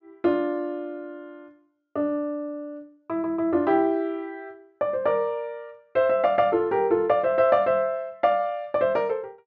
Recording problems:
treble missing; nothing above 7.1 kHz

